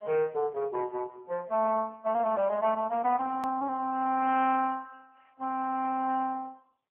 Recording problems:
phone line; 300 Hz to 3.1 kHz, AMR-NB
hard cut with a click; at 3.5 s

